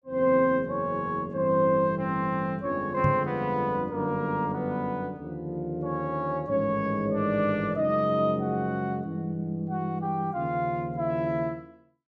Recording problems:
knock on the microphone; at 3 s; peak +3 dB vs average level

